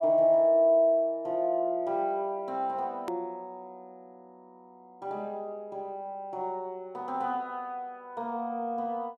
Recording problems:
hard cut with a click; at 3 s

